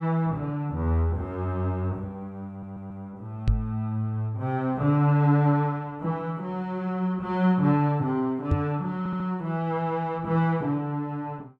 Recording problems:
audio stuttering; at 2.5 s and at 9 s
knock on the microphone; at 3.5 s and at 8.5 s; peak +7 dB vs average level

